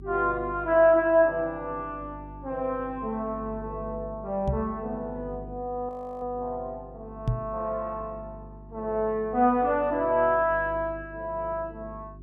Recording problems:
electrical hum; 50 Hz, harmonics up to 400 Hz, SNR 18 dB
microphone bump; at 4.5 s and at 7.5 s; peak +4 dB vs average level
audio freezing; at 6 s

